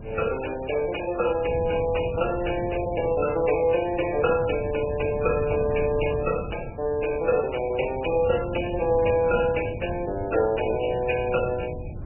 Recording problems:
lossy codec; MP3, log-spectral distance 9 dB, nothing above 2.9 kHz
wind noise; below 200 Hz, SNR 11 dB

